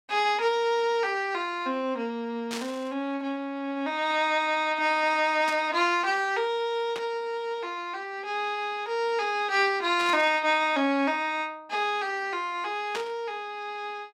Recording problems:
burst of static; 5 times, first at 2.5 s; peak -3 dB vs average level

